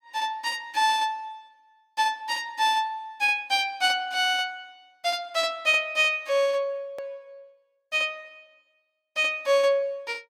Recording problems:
hard cut with a click; at 7 s

